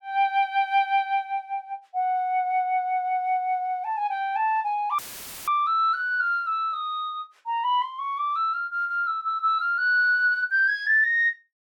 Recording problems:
audio cutting out; at 5 s; filled with static

